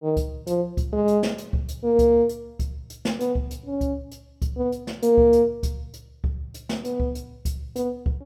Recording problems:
none

